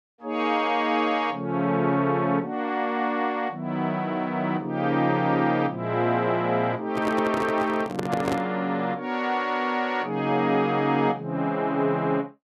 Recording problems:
handling noise; from 7 to 8.5 s; peak 0 dB vs average level

